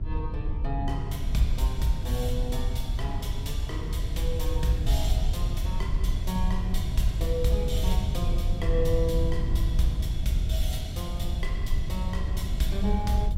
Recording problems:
hum; 60 Hz, harmonics up to 720 Hz, SNR 21 dB
rumble; below 78 Hz, SNR -2 dB

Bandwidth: 16 kHz